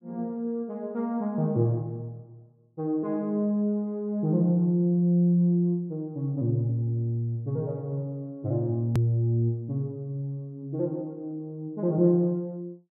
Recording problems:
click at an edit; at 9 s

